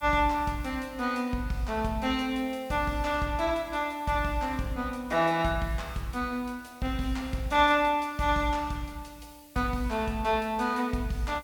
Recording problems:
hiss; SNR 27 dB

